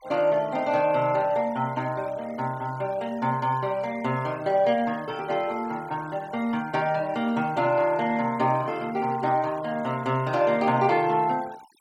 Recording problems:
denoising artefacts; signal-to-artefact ratio 23 dB

